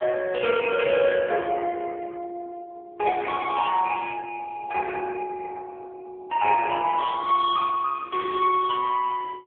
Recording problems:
telephone audio; 300 Hz to 3.3 kHz, AMR-NB

